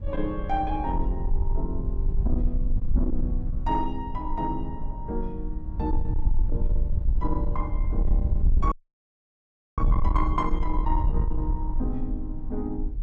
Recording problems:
distortion; soft clipping, signal-to-distortion ratio 11 dB
rumble; below 56 Hz, SNR -2 dB
audio cutting out; at 8.5 s for 1 s

